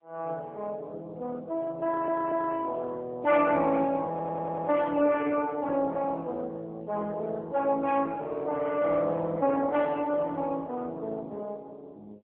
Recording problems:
phone line; 220 Hz to 3.5 kHz, AMR-NB
audio stuttering; at 2 s and at 4 s

